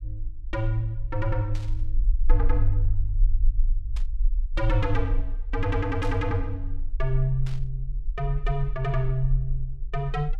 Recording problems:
low-frequency rumble; below 40 Hz, strongest tone 18 Hz, SNR 1 dB
burst of static; 4 times, first at 1.5 s; peak -11 dB vs average level

